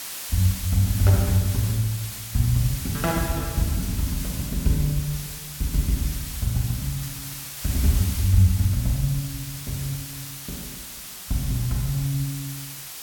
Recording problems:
background hiss; slope +2 dB per octave, SNR 9 dB

